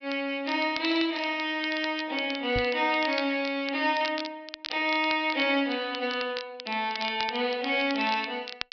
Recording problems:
low-pass filter; nothing above 5.5 kHz
crackle; vinyl, SNR 12 dB
microphone bump; at 2.5 s; peak -3 dB vs average level

